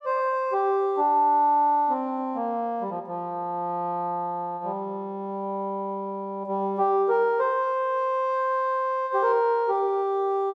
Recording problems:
none

